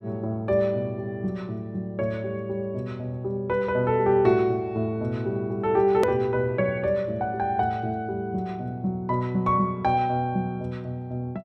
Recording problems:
hard cut with a click; at 6 s

